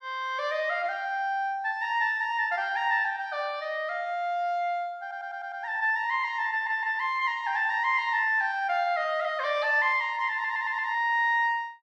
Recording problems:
stutter; at 5 s, at 6.5 s and at 10 s

